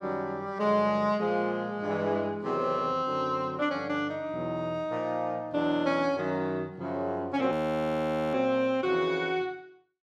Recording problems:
frozen audio; at 7.5 s for 1 s

